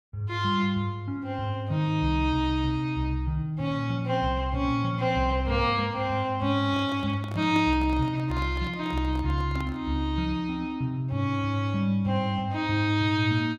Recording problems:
handling noise; from 6.5 to 10 s; peak -6 dB vs average level

